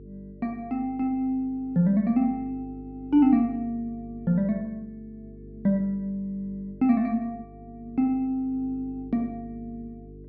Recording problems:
hum; 50 Hz, harmonics up to 450 Hz, SNR 19 dB

